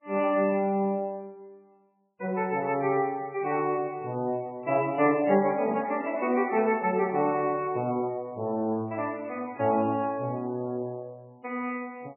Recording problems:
codec artefacts; MP3, log-spectral distance 3 dB, nothing above 2.4 kHz
static burst; at 6.5 s; peak -2 dB vs average level

